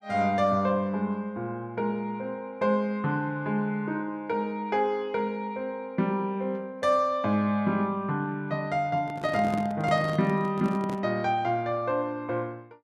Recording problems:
handling noise; from 9 to 11 s; peak -3 dB vs average level

